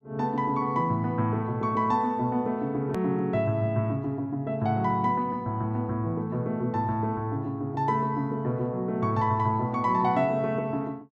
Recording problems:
edit click; at 3 s

